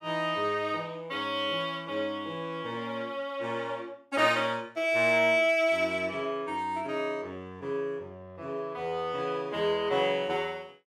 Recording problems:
none

